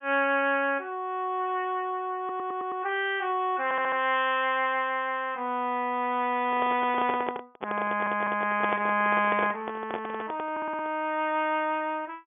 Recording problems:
treble missing; nothing above 3.4 kHz
stutter; 4 times, first at 2 s
handling noise; from 6.5 to 11 s; peak 0 dB vs average level

